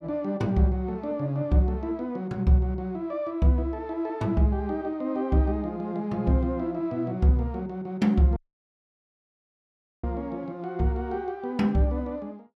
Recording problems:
audio cutting out; at 8.5 s for 1.5 s

